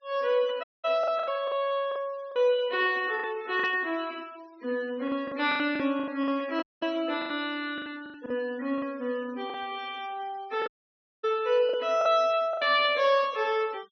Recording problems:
treble missing; nothing above 6 kHz
denoising artefacts; signal-to-artefact ratio 24 dB
lost packets; 10% of the sound replaced, filled with the last packet
dropout; at 0.5 s, at 6.5 s and at 11 s for 0.5 s
burst of static; at 3.5 s; peak -13 dB vs average level

